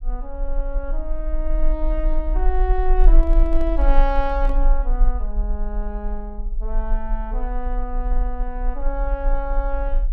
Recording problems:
low-frequency rumble; below 38 Hz, strongest tone 24 Hz, SNR -5 dB
handling noise; from 3 to 4.5 s; peak -8 dB vs average level

